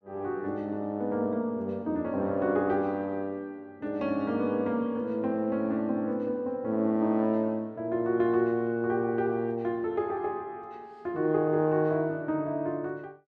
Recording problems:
none

